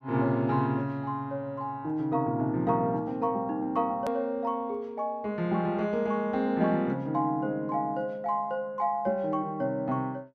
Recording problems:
click at an edit; at 4 s

